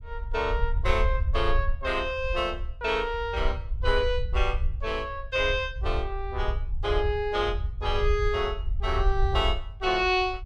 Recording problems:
rumble; below 64 Hz, SNR 4 dB

